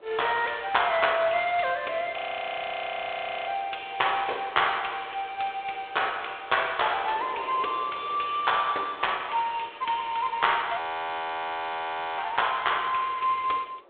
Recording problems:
phone line; 320 Hz to 3.6 kHz, G.726
wind on the microphone; below 900 Hz, SNR 22 dB
frozen audio; at 2 s for 1.5 s and at 11 s for 1.5 s

